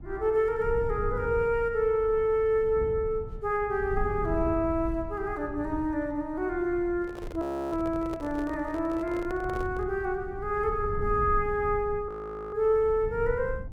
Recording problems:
low-frequency rumble; below 100 Hz, SNR 12 dB
microphone handling noise; from 7 to 10 s; peak -8 dB vs average level
frozen audio; at 7.5 s and at 12 s

